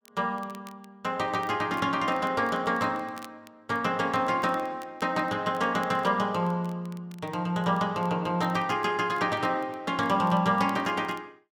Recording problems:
crackle; vinyl, SNR 28 dB

